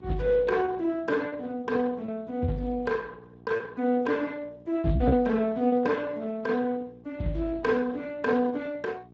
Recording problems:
lossy codec; Speex, log-spectral distance 2 dB
hum; 60 Hz, harmonics up to 1.1 kHz, SNR 22 dB
lost packets; 5% of the sound replaced, filled with repeated pitch periods

